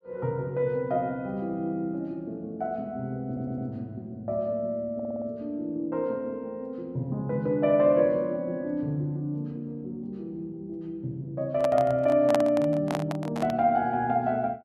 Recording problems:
stutter; at 3.5 s and at 5 s
microphone handling noise; from 12 to 14 s; peak +4 dB vs average level

